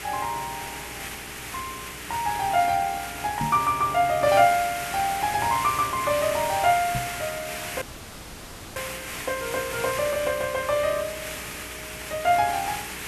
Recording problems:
hum; 60 Hz, harmonics up to 480 Hz, SNR 22 dB
hiss; SNR 9 dB
knock on the microphone; at 3.5 s and at 7 s; peak -2 dB vs average level
dropout; at 8 s for 1 s

